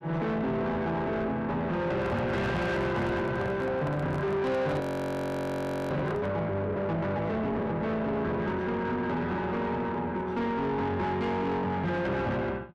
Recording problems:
distorted audio; soft clipping, signal-to-distortion ratio 7 dB
handling noise; from 2 to 6.5 s; peak -1 dB vs average level
audio freezing; at 5 s for 1 s

